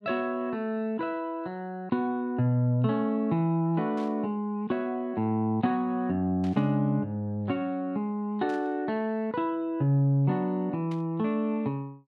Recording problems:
static burst; 4 times, first at 4 s; peak -16 dB vs average level

